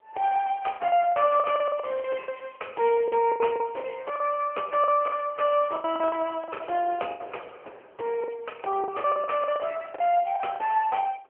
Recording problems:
phone line; 340 Hz to 2.5 kHz, AMR-NB
wind on the microphone; below 910 Hz, SNR 23 dB
packet loss; 13% of the sound replaced, filled with the last packet

